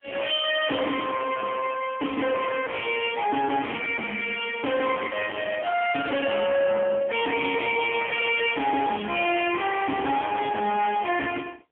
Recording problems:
phone line; 240 Hz to 3.1 kHz, AMR-NB, then MP3
distortion; hard clipping, uneven, signal-to-distortion ratio 7 dB

